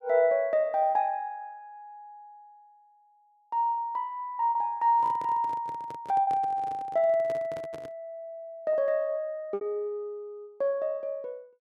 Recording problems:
lost packets; 3% of the sound replaced, filled with repeated pitch periods
handling noise; from 5 to 8 s; peak -10 dB vs average level

